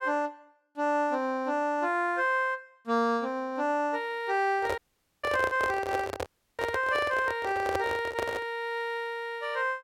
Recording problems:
microphone handling noise; from 4.5 to 8.5 s; peak +2 dB vs average level
audio cutting out; at 5 s and at 6.5 s

